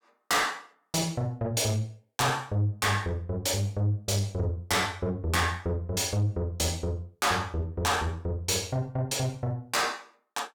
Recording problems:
distortion; soft clipping, signal-to-distortion ratio 8 dB

